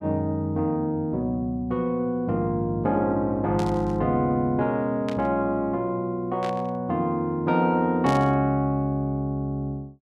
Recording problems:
static burst; 4 times, first at 3.5 s; peak -8 dB vs average level

